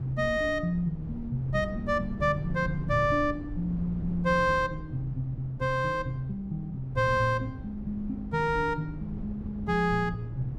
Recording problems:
wind noise; below 160 Hz, SNR 11 dB

